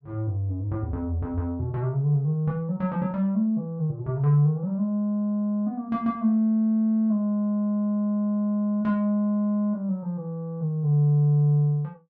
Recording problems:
none

